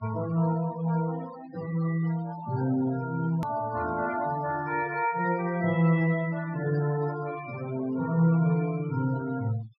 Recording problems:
low-pass filter; nothing above 5.3 kHz
denoising artefacts; signal-to-artefact ratio 16 dB
edit click; at 3.5 s

